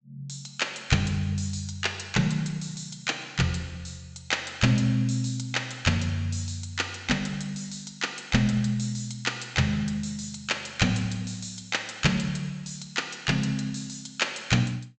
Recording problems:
low-pass filter; nothing above 8 kHz

